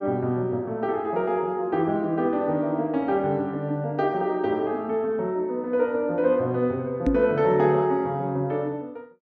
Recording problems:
microphone thump; at 7 s; peak +5 dB vs average level

